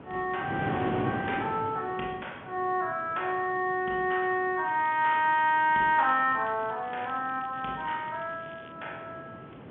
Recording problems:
telephone audio; 190 Hz to 3.4 kHz, G.711
wind on the microphone; below 790 Hz, SNR 12 dB
crackling; from 4.5 to 8.5 s; loose cable, SNR 27 dB

